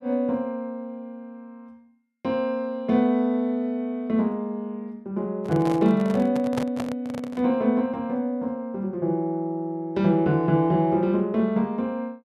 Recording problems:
handling noise; from 5.5 to 7.5 s; peak 0 dB vs average level

